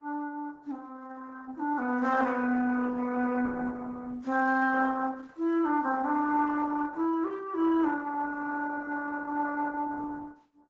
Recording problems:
codec artefacts; AAC, then Opus, log-spectral distance 3 dB

